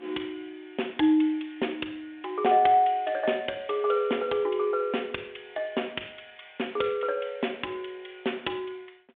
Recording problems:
phone line; 260 Hz to 3.5 kHz, G.726

